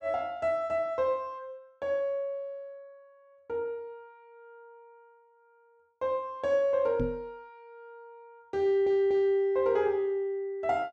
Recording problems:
microphone bump; at 7 s; peak 0 dB vs average level
audio stuttering; at 8.5 s

